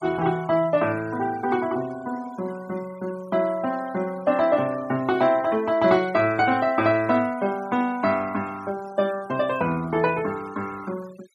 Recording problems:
noise reduction artefacts; signal-to-artefact ratio 19 dB

